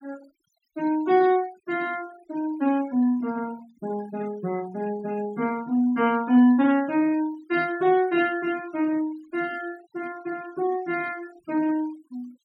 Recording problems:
noise reduction artefacts; signal-to-artefact ratio 22 dB

